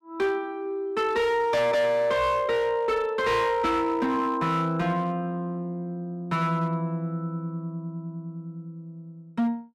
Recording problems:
distorted audio; hard clipping, signal-to-distortion ratio 10 dB

